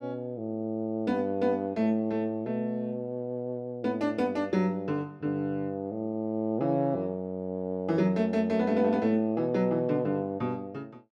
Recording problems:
none

